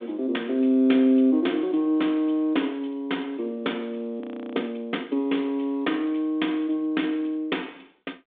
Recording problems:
telephone audio; 220 Hz to 3.6 kHz, G.726
frozen audio; at 4 s

